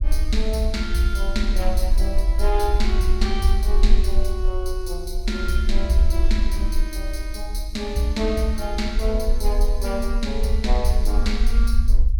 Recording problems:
rumble; below 48 Hz, strongest tone 20 Hz, SNR -1 dB

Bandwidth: 17 kHz